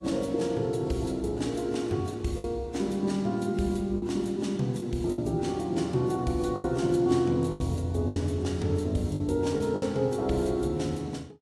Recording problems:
codec artefacts; AAC, log-spectral distance 2 dB, nothing above 11.3 kHz
packet loss; 5% of the sound replaced, filled with the last packet

